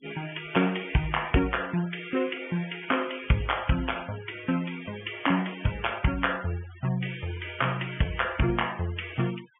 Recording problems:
low-pass filter; nothing above 3.3 kHz
denoising artefacts; signal-to-artefact ratio 16 dB

